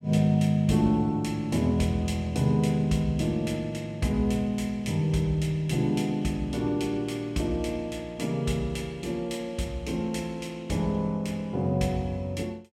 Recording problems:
none

